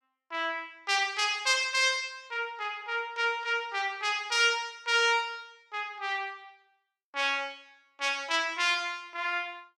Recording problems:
none

